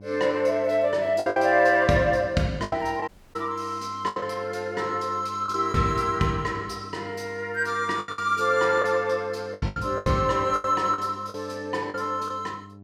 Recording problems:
hum; 50 Hz, harmonics up to 1 kHz, SNR 20 dB
packet loss; 8% of the sound replaced, filled with the last packet
audio cutting out; at 3 s

